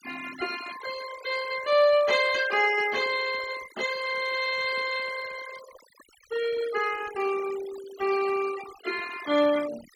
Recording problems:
denoising artefacts; signal-to-artefact ratio 14 dB

